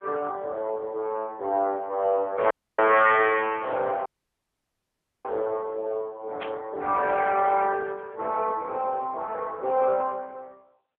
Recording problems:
telephone audio; 340 Hz to 3.3 kHz, AMR-NB
audio cutting out; at 2.5 s and at 4 s for 1 s
burst of static; at 6.5 s; peak -7 dB vs average level

